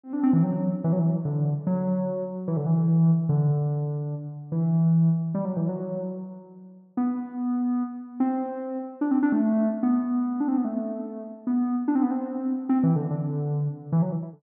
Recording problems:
none

